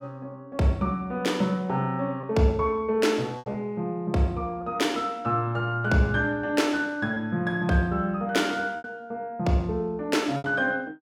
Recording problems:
packet loss; 3% of the sound replaced, filled with repeated pitch periods

